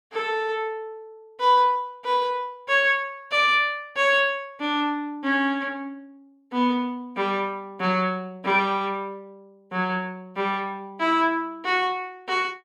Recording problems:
none

